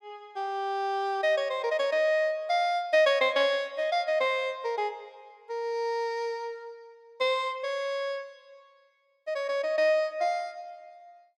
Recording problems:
none

